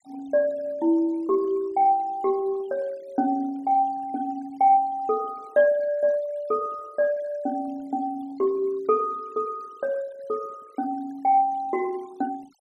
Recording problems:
denoising artefacts; signal-to-artefact ratio 27 dB

